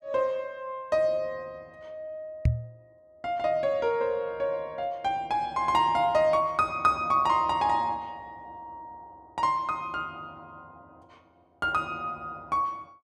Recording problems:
knock on the microphone; at 2.5 s; peak +7 dB vs average level

